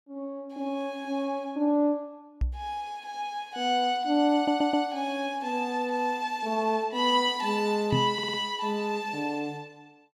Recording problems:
microphone bump; at 2.5 s and at 8 s; peak +4 dB vs average level
stutter; at 4.5 s and at 8 s

